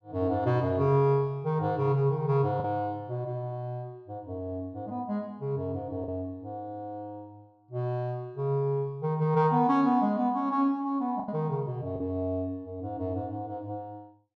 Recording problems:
packet loss; 1.5% of the sound replaced, filled with the last packet

